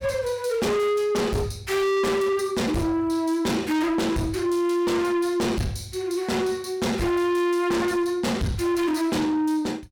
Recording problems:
distortion; soft clipping, signal-to-distortion ratio 7 dB

